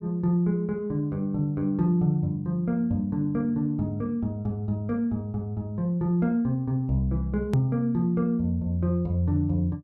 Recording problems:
click at an edit; at 7.5 s

